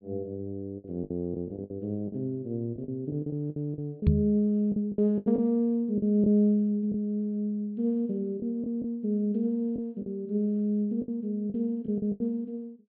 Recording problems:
low-pass filter; nothing above 4.5 kHz
packet loss; 9% of the sound replaced, filled with the last packet
knock on the microphone; at 4 s; peak +10 dB vs average level

